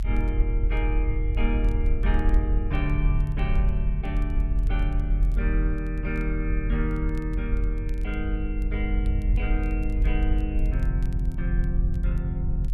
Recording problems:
low-frequency rumble; below 52 Hz, strongest tone 42 Hz, SNR -5 dB
crackle; vinyl, SNR 29 dB

